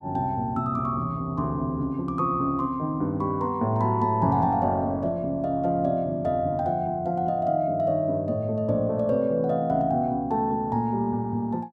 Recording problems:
none

